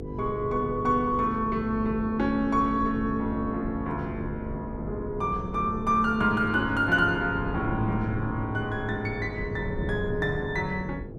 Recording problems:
mains hum; 50 Hz, harmonics up to 500 Hz, SNR 12 dB
wind noise; below 220 Hz, SNR 10 dB

